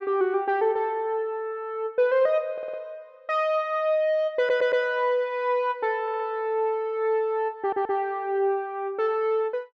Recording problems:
audio stuttering; 4 times, first at 2.5 s

